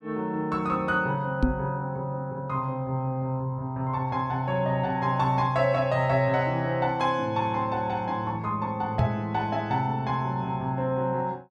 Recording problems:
microphone thump; at 1.5 s and at 9 s; peak +7 dB vs average level

